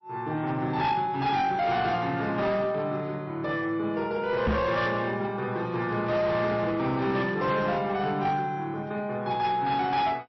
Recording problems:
lossy codec; MP3, log-spectral distance 2 dB, nothing above 5.7 kHz
distorted audio; hard clipping, signal-to-distortion ratio 12 dB
knock on the microphone; at 4.5 s; peak +4 dB vs average level

